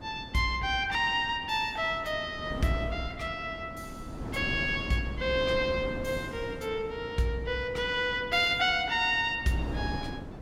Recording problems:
wind on the microphone; below 390 Hz, SNR 11 dB

